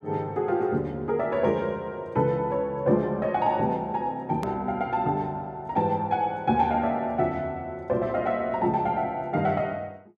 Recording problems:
click at an edit; at 4.5 s

